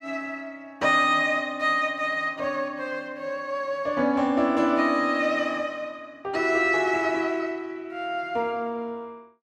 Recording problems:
none

